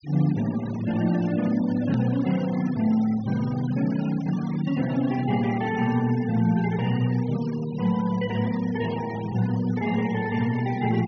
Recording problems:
low-pass filter; nothing above 6.3 kHz
noise reduction artefacts; signal-to-artefact ratio 17 dB
hard cut with a click; at 2 s

